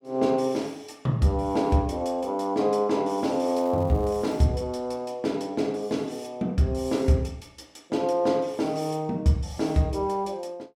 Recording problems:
crackling; at 3.5 s; loose cable, SNR 28 dB

